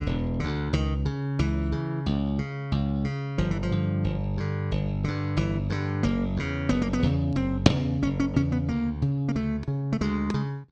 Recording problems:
none

